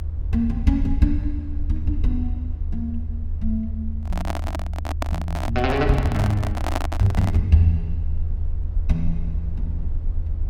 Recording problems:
low-frequency rumble; below 78 Hz, SNR 4 dB
handling noise; from 4 to 7.5 s; peak +2 dB vs average level

